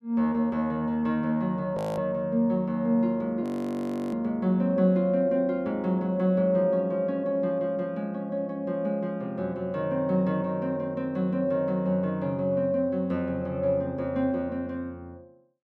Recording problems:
audio freezing; at 2 s and at 3.5 s for 0.5 s

